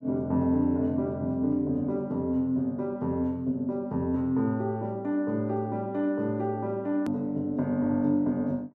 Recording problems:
hard cut with a click; at 7 s

